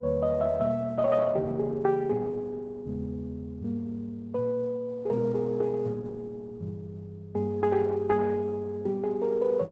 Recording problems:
codec artefacts; Opus, log-spectral distance 2 dB, nothing above 7.8 kHz

